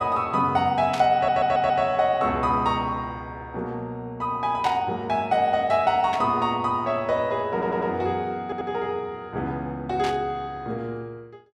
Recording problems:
static burst; 4 times, first at 1 s; peak -5 dB vs average level
audio stuttering; at 1 s, at 7.5 s and at 8.5 s

